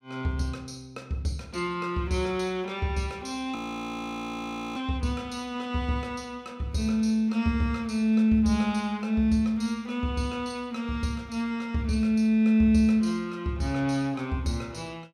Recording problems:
frozen audio; at 3.5 s for 1 s

